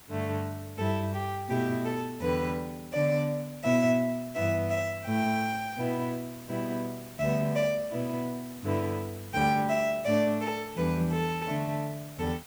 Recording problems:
hiss; slope -2 dB per octave, SNR 18 dB

